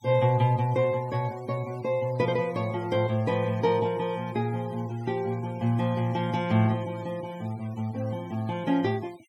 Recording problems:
denoising artefacts; signal-to-artefact ratio 23 dB

